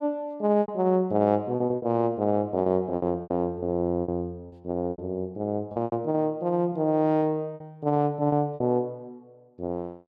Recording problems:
lost packets; 10% of the sound replaced, filled with repeated pitch periods

